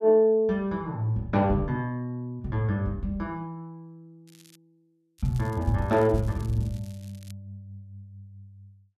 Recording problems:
crackling; at 4.5 s and from 5 to 7.5 s; loose cable, SNR 27 dB

